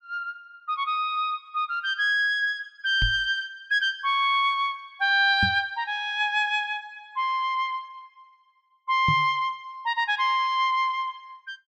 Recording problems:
microphone bump; at 3 s, at 5.5 s and at 9 s; peak 0 dB vs average level

